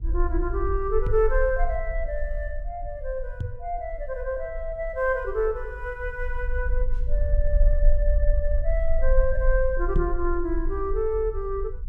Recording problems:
low-frequency rumble; below 44 Hz, strongest tone 20 Hz, SNR 1 dB
microphone bump; at 1 s, at 3.5 s and at 10 s; peak +3 dB vs average level

